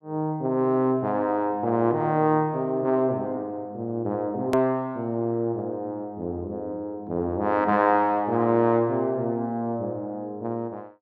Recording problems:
hard cut with a click; at 4.5 s

